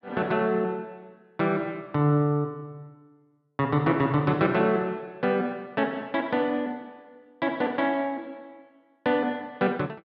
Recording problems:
none

